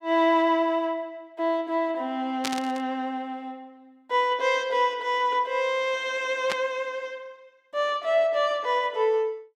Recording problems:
burst of static; at 2.5 s and at 6.5 s; peak 0 dB vs average level

